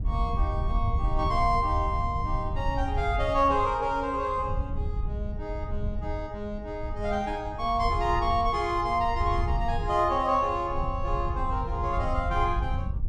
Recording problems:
wind noise; below 86 Hz, SNR 5 dB

